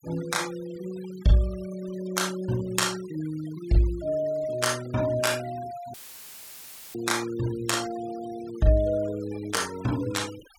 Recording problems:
noise reduction artefacts; signal-to-artefact ratio 17 dB
dropout; at 6 s for 1 s; filled with static

